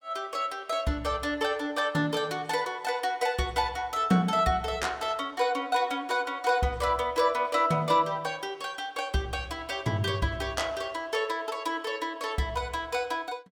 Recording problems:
none

